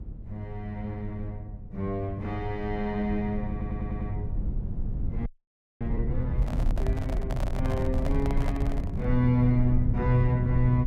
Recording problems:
rumble; below 98 Hz, SNR 2 dB
audio stuttering; at 3.5 s
audio freezing; at 5.5 s for 0.5 s
microphone handling noise; from 6.5 to 9 s; peak -4 dB vs average level

